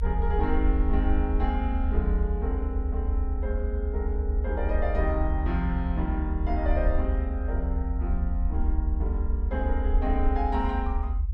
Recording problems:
rumble; below 68 Hz, SNR -4 dB

